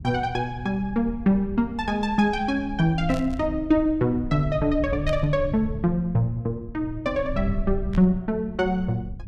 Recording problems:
rumble; below 96 Hz, SNR 12 dB
burst of static; at 3 s, at 5 s and at 8 s; peak -11 dB vs average level

